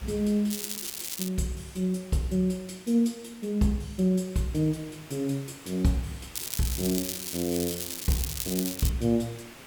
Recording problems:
background hiss; slope -3 dB per octave, SNR 19 dB
crackle; at 0.5 s and from 6.5 to 9 s; loose cable, SNR 4 dB

